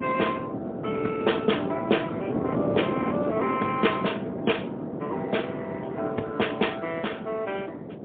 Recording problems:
phone line; 190 Hz to 3.5 kHz, AMR-NB, then MP3
wind noise; below 490 Hz, SNR 4 dB

